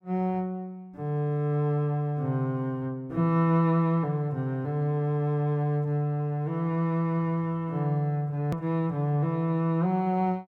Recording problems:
edit click; at 8.5 s

